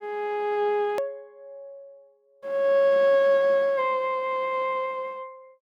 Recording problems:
edit click; at 1 s

